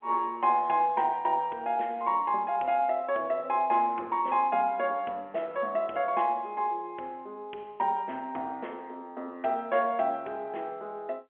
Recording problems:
phone line; 280 Hz to 3.3 kHz, G.711

